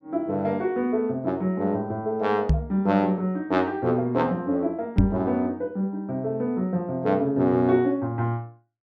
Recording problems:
microphone thump; at 2.5 s and at 5 s; peak +8 dB vs average level

